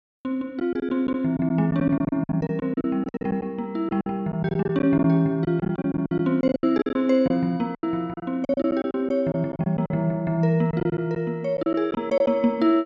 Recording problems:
packet loss; 14% of the sound replaced, filled with silence

